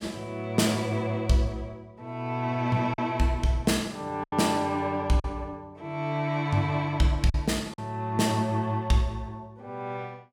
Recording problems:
packet loss; 2% of the sound replaced, filled with silence

